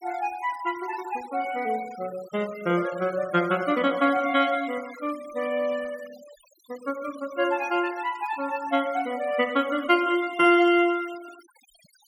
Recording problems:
denoising artefacts; signal-to-artefact ratio 20 dB

